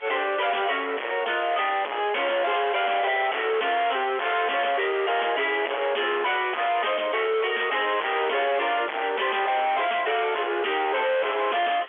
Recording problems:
phone line; 320 Hz to 3.5 kHz, G.711
distortion; hard clipping, signal-to-distortion ratio 5 dB
hiss; SNR 21 dB

